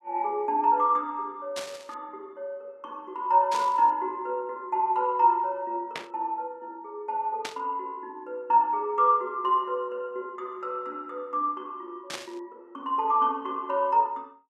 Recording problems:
static burst; 5 times, first at 1.5 s; peak -3 dB vs average level

